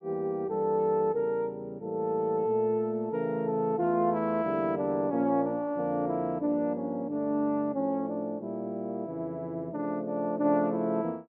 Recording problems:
none

